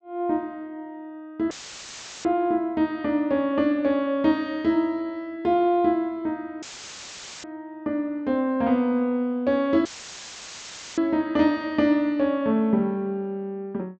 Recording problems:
treble missing; nothing above 8 kHz
audio cutting out; at 1.5 s for 0.5 s, at 6.5 s for 1 s and at 10 s for 1 s; filled with static

